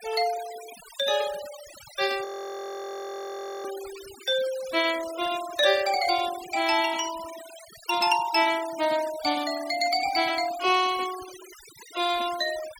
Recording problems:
noise reduction artefacts; signal-to-artefact ratio 15 dB
audio freezing; at 2.5 s for 1.5 s

